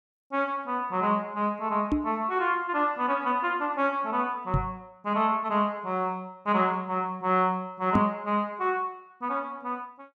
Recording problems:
knock on the microphone; at 2 s, at 4.5 s and at 8 s; peak +7 dB vs average level

